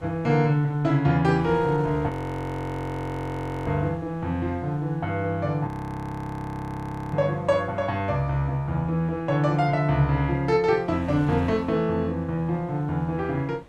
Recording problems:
wind on the microphone; below 720 Hz, SNR 23 dB
frozen audio; at 2 s for 1.5 s and at 5.5 s for 1.5 s

